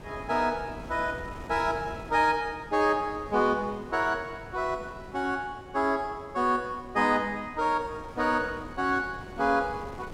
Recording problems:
wind on the microphone; below 560 Hz, SNR 17 dB

